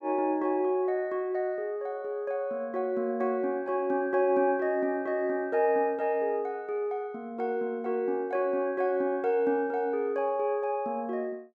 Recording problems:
none

